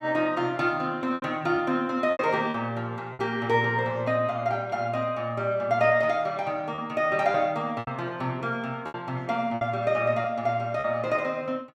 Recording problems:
packet loss; 5% of the sound replaced, filled with repeated pitch periods

